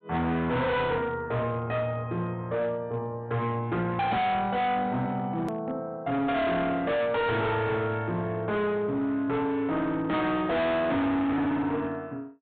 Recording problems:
treble cut off; nothing above 4 kHz
distortion; hard clipping, signal-to-distortion ratio 6 dB
click at an edit; at 5.5 s

